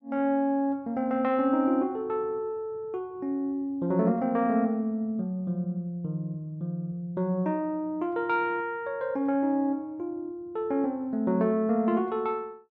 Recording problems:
none

